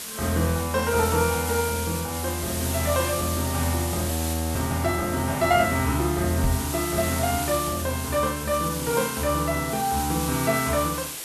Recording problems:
hiss; slope 0 dB per octave, SNR 6 dB
frozen audio; at 4 s
microphone bump; at 6.5 s; peak +3 dB vs average level

